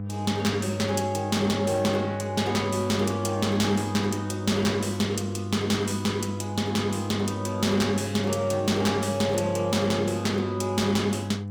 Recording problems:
distortion; hard clipping, uneven, signal-to-distortion ratio 11 dB
hum; 50 Hz, harmonics up to 700 Hz, SNR 7 dB

